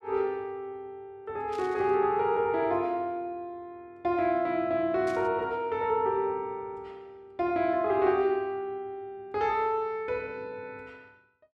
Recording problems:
burst of static; at 1.5 s and at 5 s; peak -14 dB vs average level

